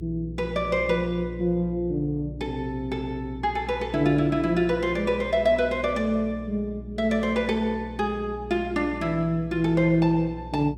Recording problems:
hum; 60 Hz, harmonics up to 420 Hz, SNR 14 dB

